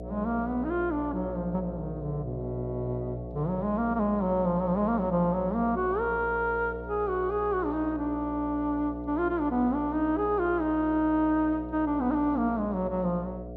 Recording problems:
electrical hum; 60 Hz, harmonics up to 720 Hz, SNR 11 dB

